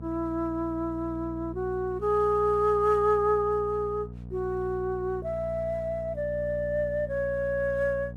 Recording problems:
mains hum; 60 Hz, harmonics up to 720 Hz, SNR 13 dB

